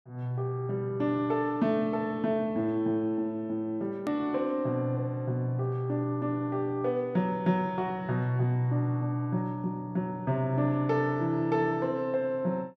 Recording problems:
edit click; at 4 s

